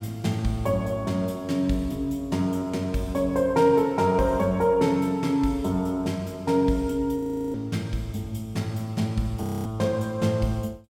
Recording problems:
frozen audio; at 7 s and at 9.5 s

